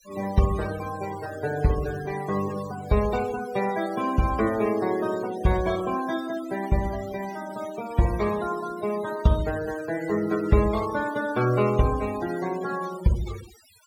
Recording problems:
denoising artefacts; signal-to-artefact ratio 15 dB

